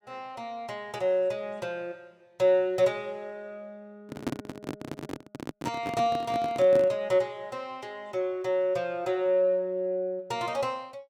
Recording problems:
handling noise; from 4 to 7 s; peak +1 dB vs average level

